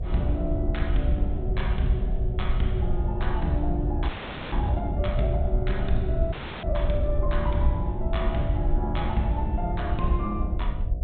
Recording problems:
low-pass filter; nothing above 4 kHz
mains hum; 60 Hz, harmonics up to 720 Hz, SNR 17 dB
rumble; below 70 Hz, SNR -1 dB
audio freezing; at 4 s and at 6.5 s

